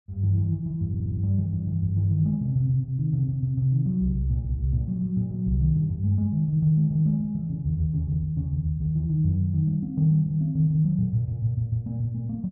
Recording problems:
audio stuttering; at 1 s

